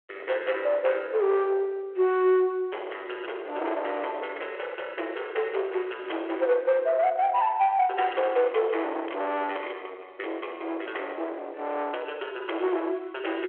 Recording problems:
phone line; 340 Hz to 3.4 kHz, G.726
distorted audio; soft clipping, signal-to-distortion ratio 11 dB
static burst; at 6 s and at 9 s; peak -12 dB vs average level

